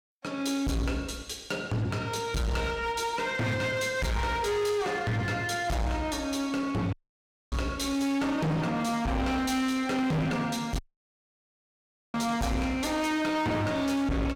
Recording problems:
distortion; hard clipping, uneven, signal-to-distortion ratio 6 dB
audio cutting out; at 7 s for 0.5 s and at 11 s for 1.5 s

